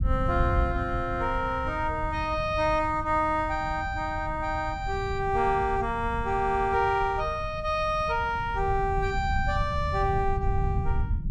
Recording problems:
low-frequency rumble; below 110 Hz, SNR 7 dB

